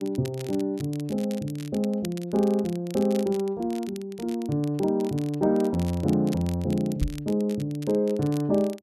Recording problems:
crackling; vinyl, SNR 20 dB
knock on the microphone; at 7 s; peak +4 dB vs average level

